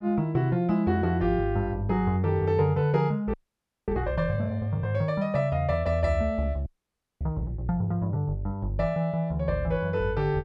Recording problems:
audio freezing; at 3.5 s for 0.5 s and at 6.5 s for 0.5 s

